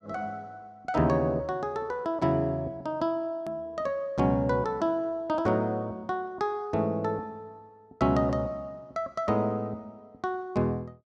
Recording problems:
click at an edit; at 3.5 s

